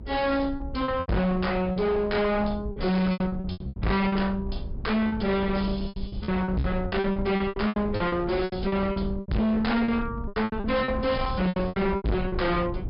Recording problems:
low-pass filter; nothing above 5.5 kHz
distortion; hard clipping, uneven, signal-to-distortion ratio 6 dB
low-frequency rumble; below 150 Hz, SNR 10 dB
packet loss; 17% of the sound replaced, filled with repeated pitch periods

